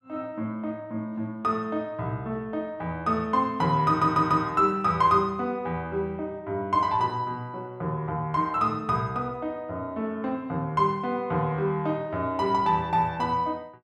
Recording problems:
stutter; at 4 s

